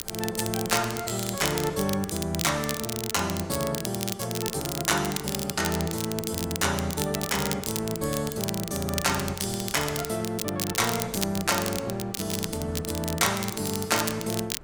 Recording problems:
wind on the microphone; below 490 Hz, SNR 20 dB
crackling; vinyl, SNR 5 dB

